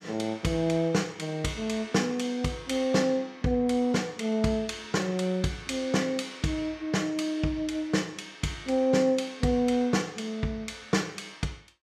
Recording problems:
none

